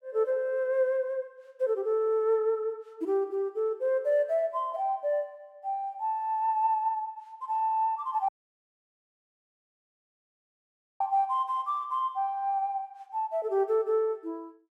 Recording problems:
audio cutting out; at 8.5 s for 2.5 s

